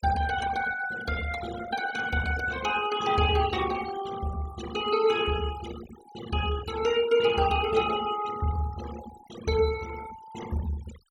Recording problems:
noise reduction artefacts; signal-to-artefact ratio 13 dB

